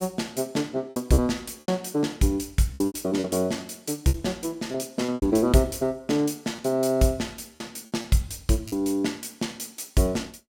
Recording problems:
lost packets; 6% of the sound replaced, filled with repeated pitch periods

